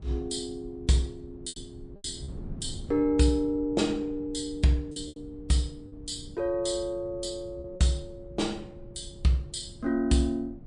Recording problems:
lossy compression; MP3, log-spectral distance 2 dB, nothing above 9.2 kHz
wind noise; below 160 Hz, SNR 17 dB
lost packets; 4% of the sound replaced, filled with repeated pitch periods

